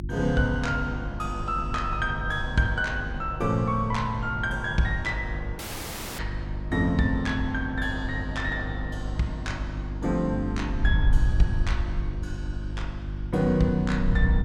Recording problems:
electrical hum; 50 Hz, harmonics up to 350 Hz, SNR 8 dB
wind noise; below 72 Hz, SNR 7 dB
dropout; at 5.5 s for 0.5 s

